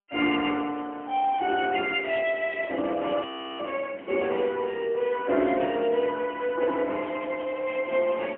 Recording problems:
phone line; 240 Hz to 3.2 kHz, AMR-NB, then MP3
audio freezing; at 3 s

